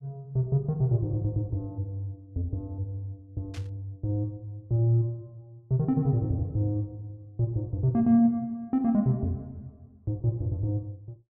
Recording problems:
static burst; at 3.5 s; peak -14 dB vs average level

